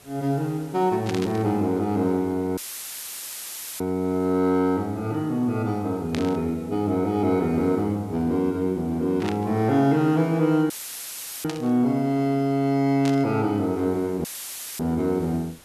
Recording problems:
hiss; slope -2 dB per octave, SNR 27 dB
static burst; 5 times, first at 1 s; peak -5 dB vs average level
dropout; at 2.5 s for 1 s, at 11 s for 0.5 s and at 14 s for 0.5 s; filled with static

